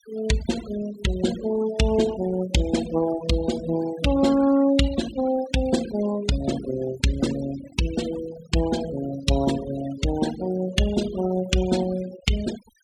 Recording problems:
noise reduction artefacts; signal-to-artefact ratio 13 dB

